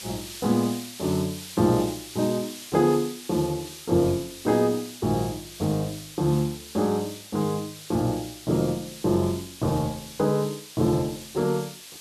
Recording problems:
hiss; SNR 14 dB

